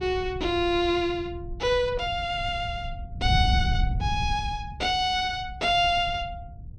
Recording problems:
wind noise; below 110 Hz, SNR 7 dB

